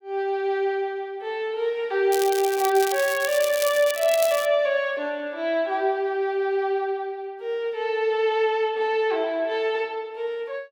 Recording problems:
crackling; from 2 to 4.5 s; loose cable, SNR 9 dB

